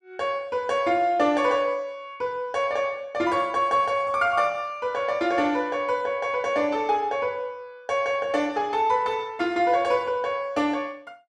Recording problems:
none

